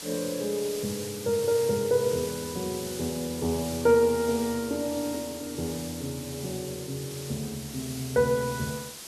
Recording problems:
background hiss; slope 0 dB per octave, SNR 10 dB

